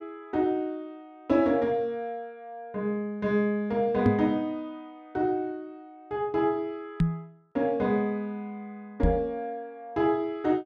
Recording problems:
microphone thump; at 4 s, at 7 s and at 9 s; peak +8 dB vs average level

